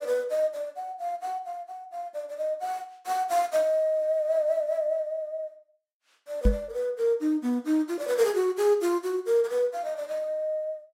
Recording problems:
microphone thump; at 6.5 s; peak +7 dB vs average level

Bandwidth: 16 kHz